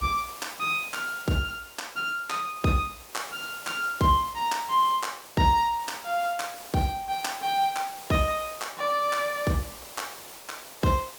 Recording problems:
background hiss; SNR 15 dB

